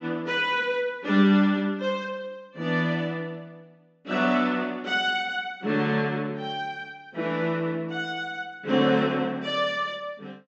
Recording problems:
treble missing; nothing above 8 kHz

